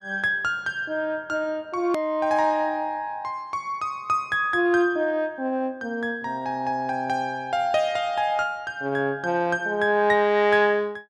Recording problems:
click at an edit; at 2 s

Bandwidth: 12 kHz